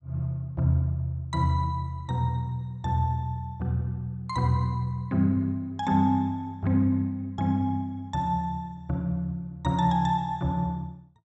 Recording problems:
none

